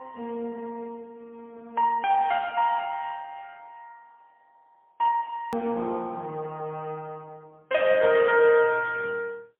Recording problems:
telephone audio; 260 Hz to 3.2 kHz, AMR-NB, then MP3
edit click; at 5.5 s

